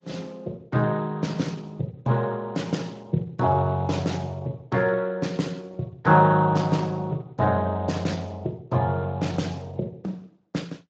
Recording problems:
codec artefacts; Opus, then Speex, log-spectral distance 3 dB

